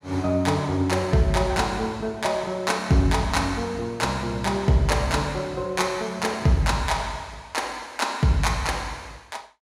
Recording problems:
none

